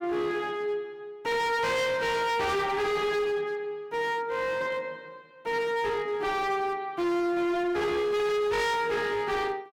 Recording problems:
distorted audio; hard clipping, signal-to-distortion ratio 7 dB

